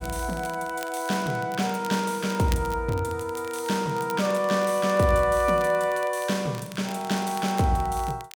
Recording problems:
crackle; vinyl, SNR 19 dB

